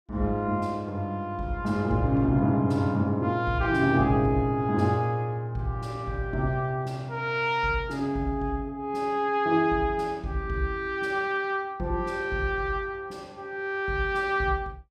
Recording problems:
none

